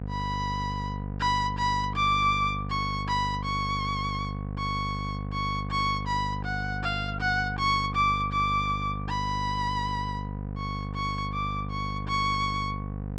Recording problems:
electrical hum; 50 Hz, harmonics up to 750 Hz, SNR 6 dB

